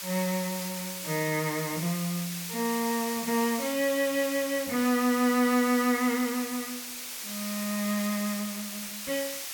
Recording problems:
hiss; slope +3 dB per octave, SNR 6 dB

